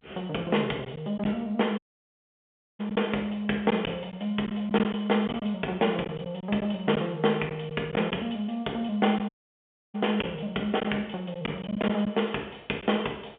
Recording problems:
phone line; 260 Hz to 3.5 kHz, G.711
lost packets; 4% of the sound replaced, filled with silence
dropout; at 2 s for 1 s and at 9.5 s for 0.5 s

